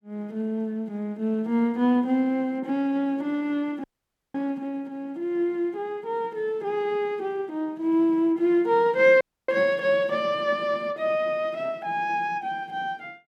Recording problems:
dropout; at 4 s for 0.5 s and at 9 s

